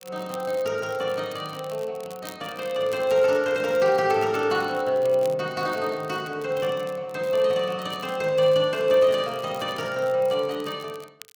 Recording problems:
crackle; vinyl, SNR 24 dB

